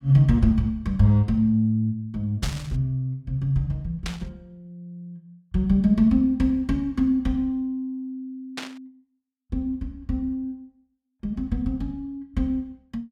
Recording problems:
burst of static; at 2.5 s, at 4 s and at 8.5 s; peak -3 dB vs average level

